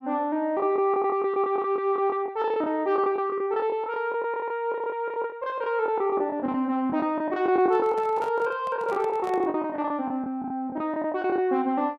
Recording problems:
lost packets; 16% of the sound replaced, filled with the last packet
microphone handling noise; from 7.5 to 9.5 s; peak -9 dB vs average level

